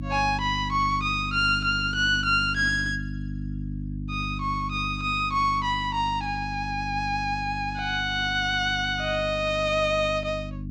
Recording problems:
hum; 50 Hz, harmonics up to 300 Hz, SNR 9 dB

